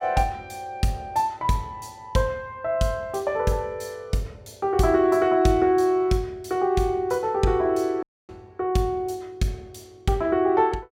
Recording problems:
dropout; at 8 s

